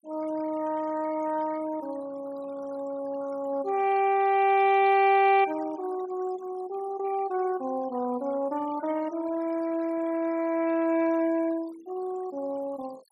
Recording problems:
noise reduction artefacts; signal-to-artefact ratio 21 dB

